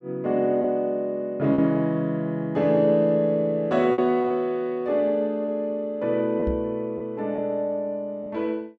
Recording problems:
packet loss; 3% of the sound replaced, filled with repeated pitch periods
microphone bump; at 6.5 s; peak -1 dB vs average level

